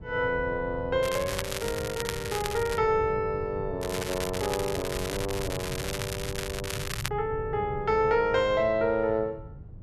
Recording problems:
wind on the microphone; below 150 Hz, SNR 11 dB
crackling; from 1 to 3 s and from 4 to 7 s; loose cable, SNR 7 dB

